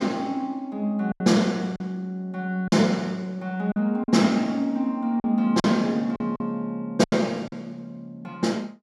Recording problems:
lost packets; 6% of the sound replaced, filled with silence

